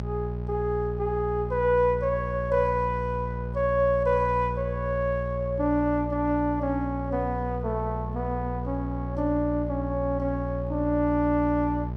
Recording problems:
hum; 60 Hz, harmonics up to 840 Hz, SNR 6 dB

